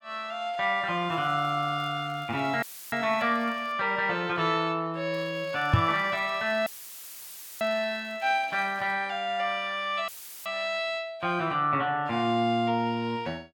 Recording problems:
crackle; from 1 to 3.5 s and from 5 to 9 s; loose cable, SNR 29 dB
audio cutting out; at 2.5 s, at 6.5 s for 1 s and at 10 s; filled with static
microphone bump; at 5.5 s; peak +9 dB vs average level

